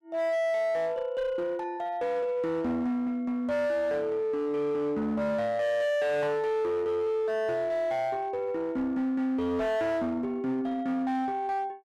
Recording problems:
distortion; hard clipping, uneven, signal-to-distortion ratio 10 dB

